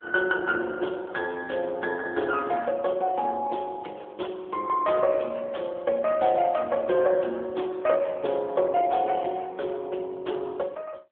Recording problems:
telephone audio; 320 Hz to 3.5 kHz, AMR-NB

